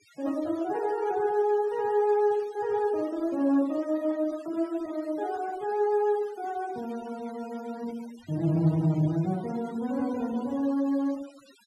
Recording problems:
denoising artefacts; signal-to-artefact ratio 22 dB

